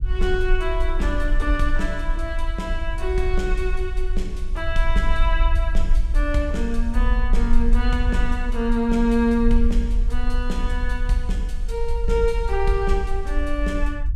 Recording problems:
low-frequency rumble; below 46 Hz, SNR 0 dB

